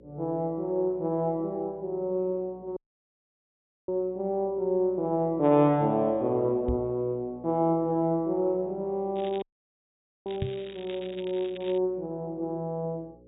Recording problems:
low-pass filter; nothing above 4 kHz
mains hum; 60 Hz, harmonics up to 540 Hz, SNR 26 dB
audio cutting out; at 3 s for 1 s and at 9.5 s for 1 s
knock on the microphone; at 6.5 s and at 10 s; peak +1 dB vs average level
crackle; from 9 to 12 s; loose cable, SNR 19 dB

